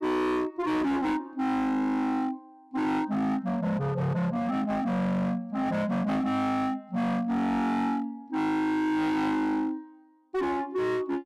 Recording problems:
distortion; hard clipping, signal-to-distortion ratio 7 dB

